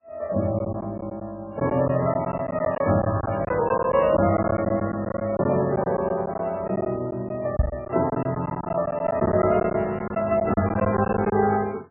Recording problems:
lossy compression; AAC, then MP3, log-spectral distance 2 dB, nothing above 2.7 kHz
lost packets; 10% of the sound replaced, filled with silence
knock on the microphone; at 7.5 s; peak +6 dB vs average level

